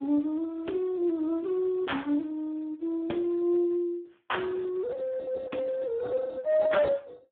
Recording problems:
phone line; 170 Hz to 3.6 kHz, Speex

